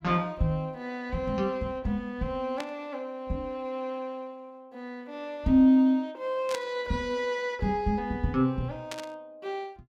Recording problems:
static burst; at 2.5 s, at 6.5 s and at 9 s; peak -3 dB vs average level

